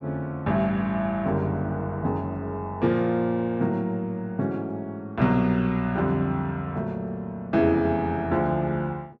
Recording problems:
none

